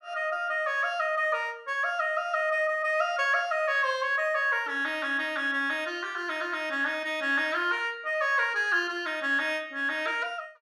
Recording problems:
none

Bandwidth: 12.5 kHz